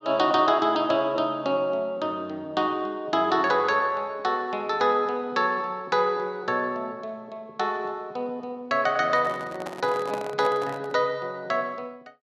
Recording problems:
microphone handling noise; from 9 to 11 s; peak -5 dB vs average level

